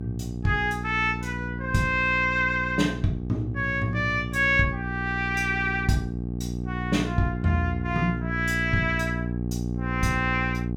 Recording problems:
hum; 60 Hz, harmonics up to 720 Hz, SNR 6 dB

